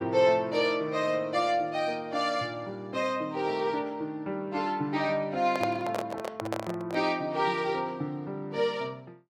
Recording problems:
microphone handling noise; from 5.5 to 7 s; peak +2 dB vs average level

